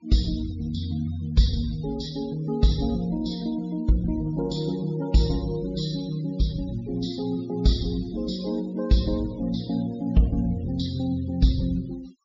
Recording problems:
treble cut off; nothing above 7.1 kHz
noise reduction artefacts; signal-to-artefact ratio 21 dB

